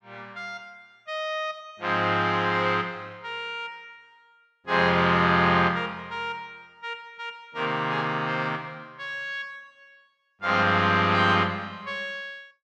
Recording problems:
none

